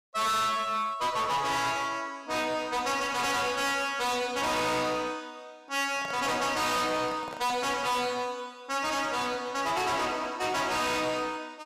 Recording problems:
distortion; hard clipping, uneven, signal-to-distortion ratio 5 dB
microphone handling noise; from 6 to 8 s; peak -7 dB vs average level

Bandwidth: 15.5 kHz